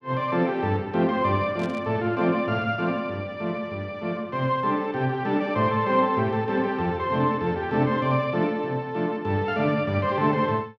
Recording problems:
static burst; at 1.5 s; peak -13 dB vs average level

